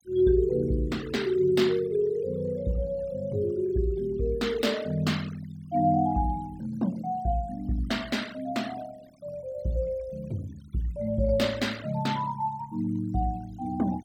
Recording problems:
denoising artefacts; signal-to-artefact ratio 20 dB

